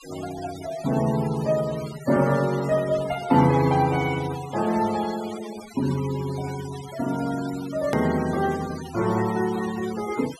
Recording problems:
noise reduction artefacts; signal-to-artefact ratio 15 dB
edit click; at 8 s

